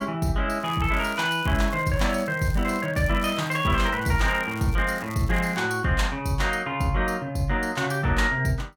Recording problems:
crackling; from 0.5 to 5.5 s; loose cable, SNR 21 dB

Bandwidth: 17.5 kHz